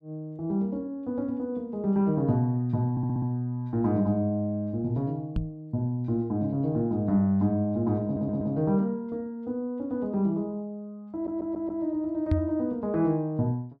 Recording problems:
audio stuttering; at 3 s, at 8 s and at 11 s
knock on the microphone; at 5.5 s and at 12 s; peak +6 dB vs average level

